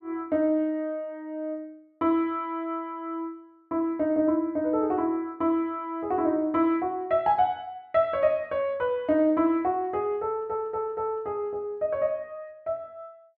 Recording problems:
audio stuttering; at 10 s

